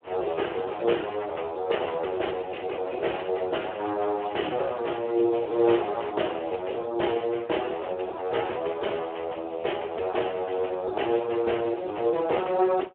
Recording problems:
phone line; 320 Hz to 3.3 kHz, Speex

